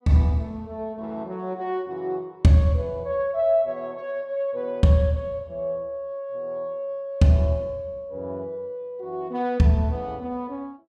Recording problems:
none

